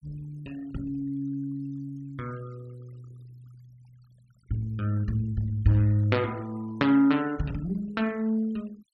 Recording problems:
noise reduction artefacts; signal-to-artefact ratio 26 dB

